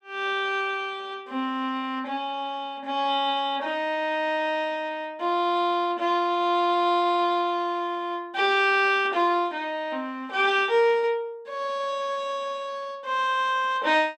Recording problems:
none

